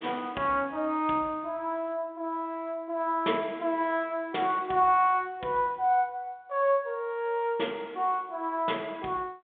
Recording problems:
phone line; 280 Hz to 3.6 kHz, G.726

